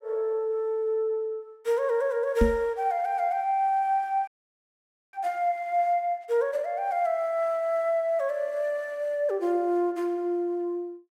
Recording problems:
microphone bump; at 2.5 s; peak +7 dB vs average level
frozen audio; at 4.5 s for 1 s

